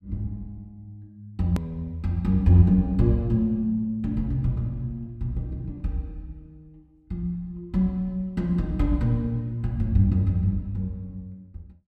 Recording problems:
hard cut with a click; at 1.5 s

